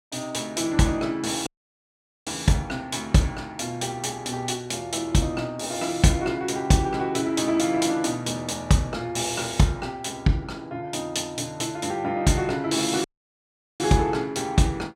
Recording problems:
audio cutting out; at 1.5 s for 1 s and at 13 s for 1 s

